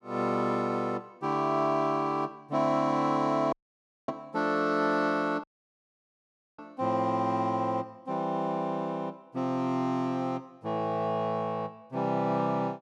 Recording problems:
audio cutting out; at 3.5 s for 0.5 s and at 5.5 s for 1 s

